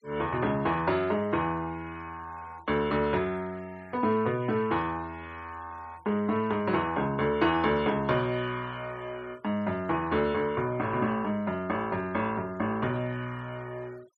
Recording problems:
noise reduction artefacts; signal-to-artefact ratio 25 dB

